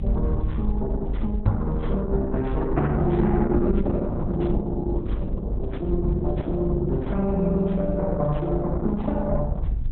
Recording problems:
lossy codec; Opus, log-spectral distance 2 dB, nothing above 3.9 kHz
rumble; below 58 Hz, SNR 4 dB
knock on the microphone; at 1.5 s; peak +9 dB vs average level

